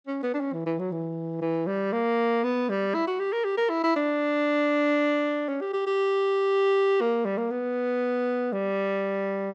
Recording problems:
none

